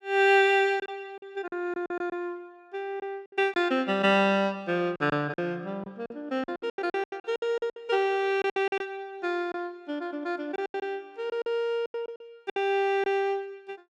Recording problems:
lost packets; 11% of the sound replaced, filled with silence

